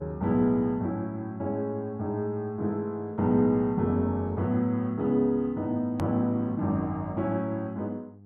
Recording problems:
hum; 50 Hz, harmonics up to 800 Hz, SNR 23 dB
click at an edit; at 6 s

